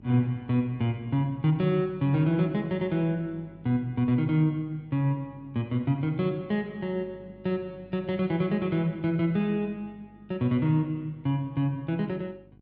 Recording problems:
electrical hum; 50 Hz, harmonics up to 750 Hz, SNR 25 dB

